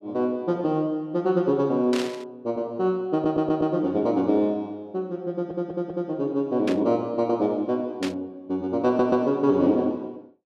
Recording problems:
static burst; at 2 s, at 6.5 s and at 8 s; peak -4 dB vs average level
audio stuttering; at 3 s, at 5.5 s and at 9 s

